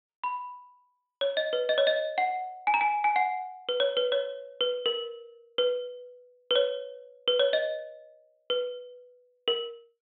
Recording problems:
treble cut off; nothing above 4 kHz

